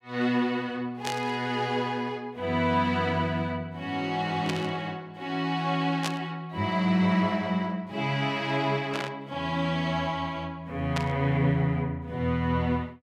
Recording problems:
burst of static; 5 times, first at 1 s; peak +1 dB vs average level

